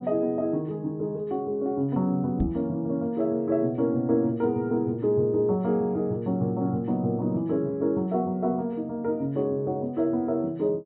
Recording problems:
treble missing; nothing above 4 kHz
microphone bump; at 2.5 s; peak +2 dB vs average level

